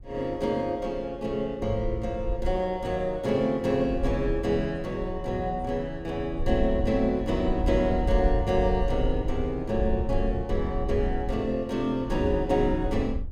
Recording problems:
wind on the microphone; below 66 Hz, SNR 6 dB

